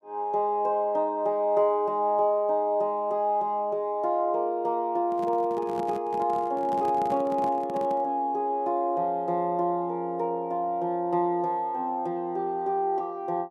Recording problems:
microphone handling noise; from 5 to 8 s; peak -7 dB vs average level

